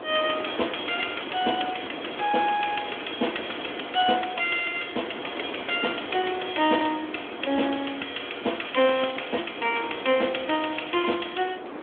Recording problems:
phone line; 240 Hz to 3.4 kHz, Speex
wind on the microphone; below 960 Hz, SNR 11 dB

